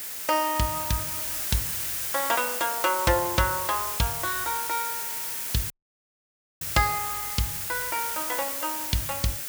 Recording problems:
background hiss; slope +1 dB per octave, SNR 1 dB
audio cutting out; at 5.5 s for 1 s

